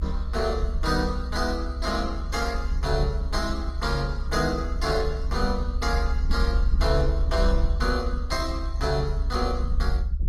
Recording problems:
codec artefacts; Opus, log-spectral distance 3 dB, nothing above 16 kHz
rumble; below 66 Hz, SNR 0 dB

